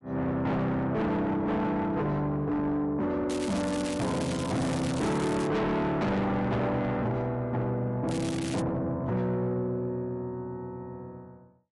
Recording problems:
lossy codec; MP3, log-spectral distance 2 dB, nothing above 11 kHz
distorted audio; soft clipping, signal-to-distortion ratio 6 dB
crackling; from 3.5 to 5.5 s and at 8 s; loose cable, SNR 10 dB

